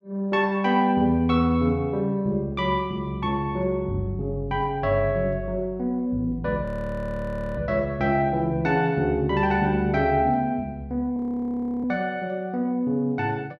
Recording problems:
frozen audio; at 6.5 s for 1 s and at 11 s for 0.5 s

